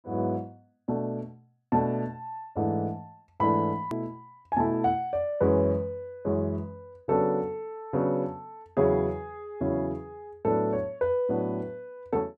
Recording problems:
click at an edit; at 4 s

